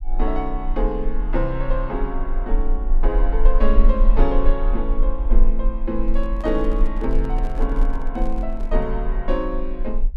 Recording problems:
rumble; below 34 Hz, strongest tone 20 Hz, SNR -2 dB
handling noise; from 6 to 9 s; peak -7 dB vs average level

